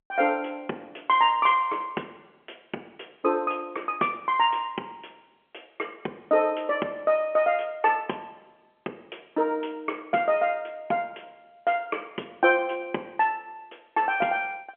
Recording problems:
telephone audio; 240 Hz to 3.2 kHz, G.711

